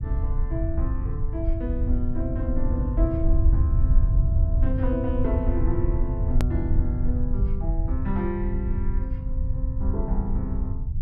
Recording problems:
low-frequency rumble; below 78 Hz, SNR -6 dB
edit click; at 6.5 s

